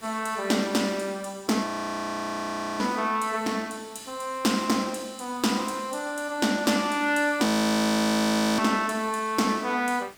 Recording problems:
hiss; slope -2 dB per octave, SNR 26 dB
frozen audio; at 1.5 s for 1 s and at 7.5 s for 1 s

